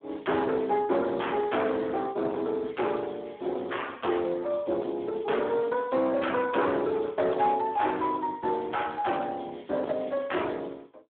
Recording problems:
phone line; 280 Hz to 3.5 kHz, Speex
distorted audio; hard clipping, uneven, signal-to-distortion ratio 10 dB

